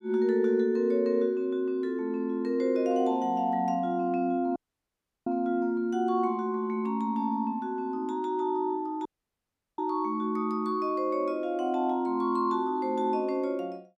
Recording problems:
dropout; at 4.5 s for 0.5 s and at 9 s for 0.5 s

